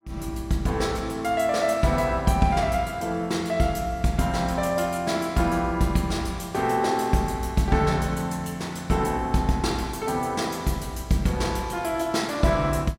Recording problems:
none

